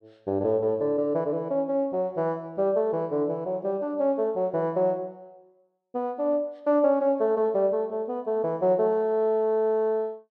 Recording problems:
none

